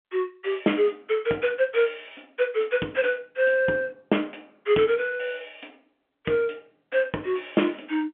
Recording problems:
phone line; 240 Hz to 3.4 kHz, G.711

